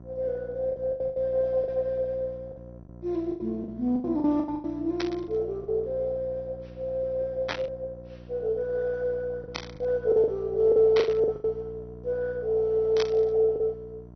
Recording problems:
lossy codec; MP2, log-spectral distance 2 dB, nothing above 6 kHz
electrical hum; 60 Hz, harmonics up to 1 kHz, SNR 18 dB
packet loss; 9% of the sound replaced, filled with the last packet
burst of static; 5 times, first at 5 s; peak +1 dB vs average level

